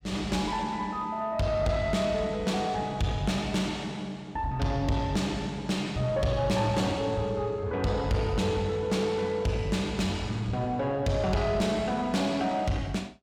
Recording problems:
distorted audio; soft clipping, signal-to-distortion ratio 10 dB

